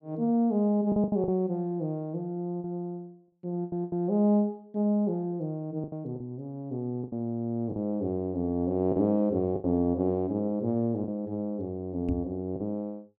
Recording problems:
packet loss; 6% of the sound replaced, filled with the last packet
knock on the microphone; at 12 s; peak 0 dB vs average level

